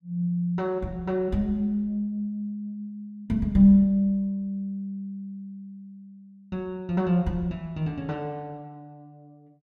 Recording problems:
none

